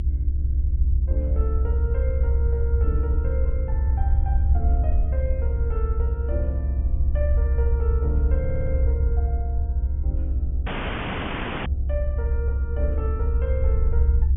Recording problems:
treble cut off; nothing above 3.4 kHz
mains hum; 50 Hz, harmonics up to 350 Hz, SNR 5 dB
rumble; below 68 Hz, strongest tone 66 Hz, SNR -11 dB
stutter; at 8.5 s
audio cutting out; at 11 s for 1 s

